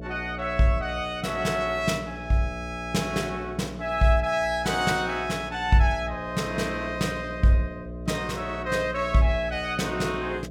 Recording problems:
hum; 60 Hz, harmonics up to 660 Hz, SNR 12 dB

